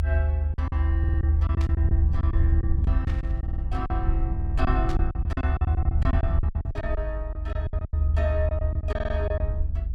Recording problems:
rumble; below 78 Hz, SNR -9 dB
packet loss; 14% of the sound replaced, filled with silence
stutter; 4 times, first at 1 s
burst of static; at 1.5 s, at 3 s and at 5 s; peak -3 dB vs average level

